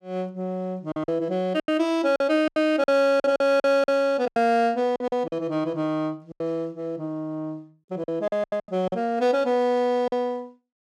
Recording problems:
packet loss; 11% of the sound replaced, filled with silence

